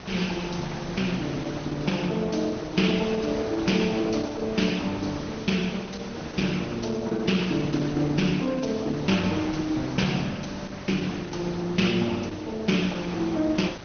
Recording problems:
treble cut off; nothing above 6.3 kHz
codec artefacts; Opus, log-spectral distance 7 dB
hiss; slope -4 dB per octave, SNR 12 dB

